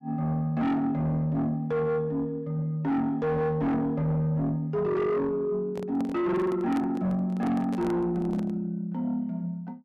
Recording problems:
distortion; soft clipping, signal-to-distortion ratio 7 dB
handling noise; from 5.5 to 8.5 s; peak -6 dB vs average level

